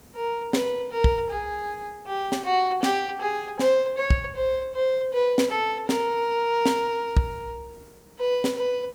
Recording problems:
hiss; SNR 28 dB

